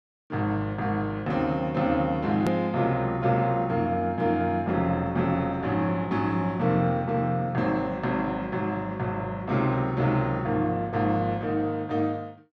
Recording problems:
edit click; at 2.5 s

